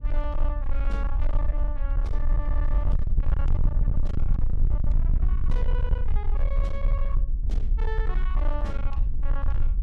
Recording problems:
distorted audio; hard clipping, signal-to-distortion ratio 6 dB
rumble; below 50 Hz, strongest tone 18 Hz, SNR -12 dB

